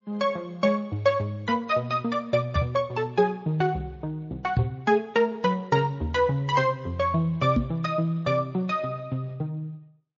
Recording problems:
codec artefacts; Speex, then MP3, log-spectral distance 2 dB, nothing above 6.3 kHz
microphone bump; at 2.5 s, at 4.5 s and at 7.5 s; peak +6 dB vs average level

